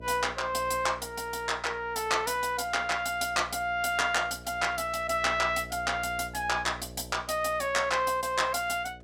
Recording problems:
hum; 60 Hz, harmonics up to 660 Hz, SNR 19 dB

